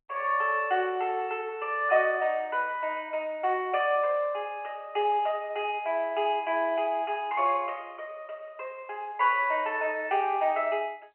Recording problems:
phone line; 300 Hz to 3.1 kHz, G.711

